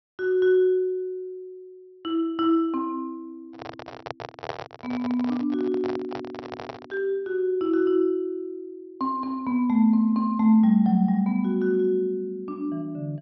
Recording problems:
treble missing; nothing above 5.7 kHz
handling noise; from 3.5 to 7 s; peak -3 dB vs average level

